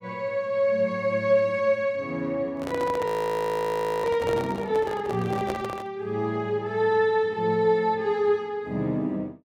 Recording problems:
handling noise; from 2.5 to 6 s; peak -2 dB vs average level
frozen audio; at 3 s for 1 s

